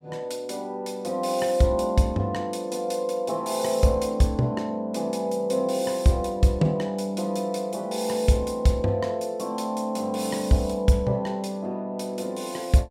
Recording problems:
none

